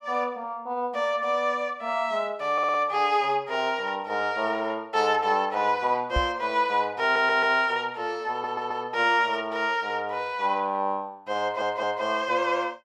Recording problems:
stutter; 4 times, first at 2.5 s
microphone bump; at 6 s; peak +1 dB vs average level

